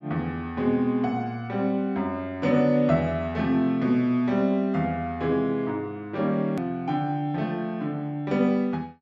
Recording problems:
treble missing; nothing above 8 kHz
click at an edit; at 6.5 s

